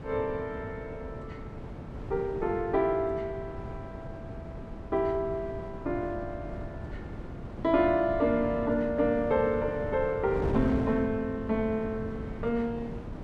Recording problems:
wind on the microphone; below 340 Hz, SNR 10 dB

